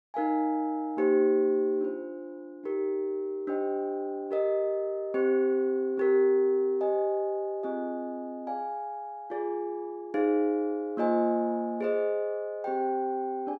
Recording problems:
none

